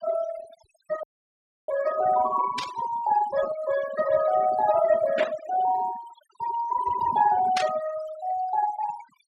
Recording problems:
denoising artefacts; signal-to-artefact ratio 12 dB
dropout; at 1 s for 0.5 s
static burst; at 2.5 s, at 5 s and at 7.5 s; peak +1 dB vs average level

